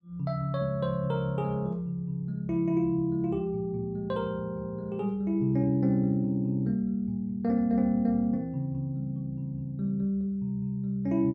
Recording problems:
none

